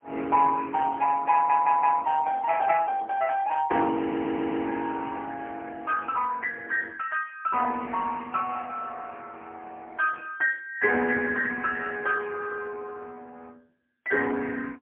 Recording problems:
telephone audio; 260 Hz to 2.8 kHz, AMR-NB, then MP3
audio stuttering; at 1.5 s and at 4 s

